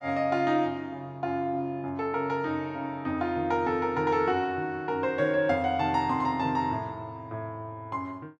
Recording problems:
none

